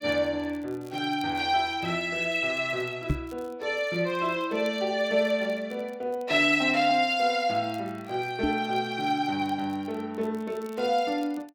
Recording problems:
crackle; vinyl, SNR 30 dB
microphone bump; at 3 s and at 8.5 s; peak +4 dB vs average level

